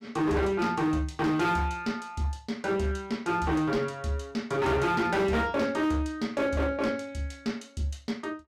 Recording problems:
distorted audio; hard clipping, signal-to-distortion ratio 10 dB

